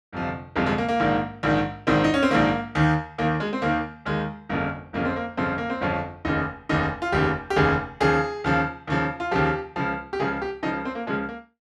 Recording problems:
none

